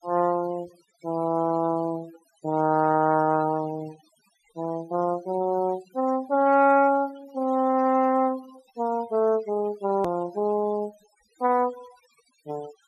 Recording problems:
noise reduction artefacts; signal-to-artefact ratio 23 dB
click at an edit; at 10 s

